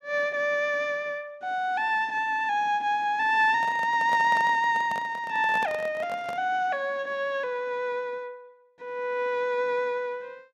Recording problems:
microphone handling noise; from 3.5 to 6.5 s; peak -7 dB vs average level

